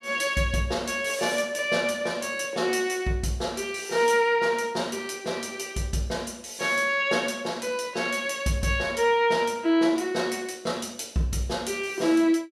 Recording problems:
none

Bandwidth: 14.5 kHz